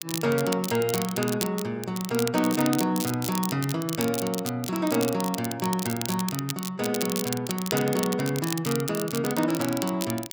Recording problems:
crackling; vinyl, SNR 7 dB

